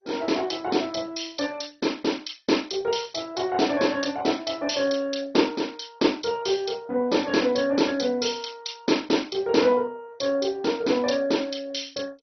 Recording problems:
codec artefacts; MP2, log-spectral distance 6 dB, nothing above 6 kHz

